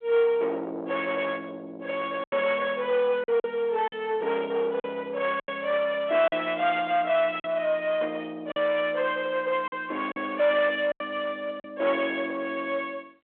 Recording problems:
phone line; 300 Hz to 3.4 kHz, G.726
distorted audio; soft clipping, signal-to-distortion ratio 12 dB
lost packets; 5% of the sound replaced, filled with silence

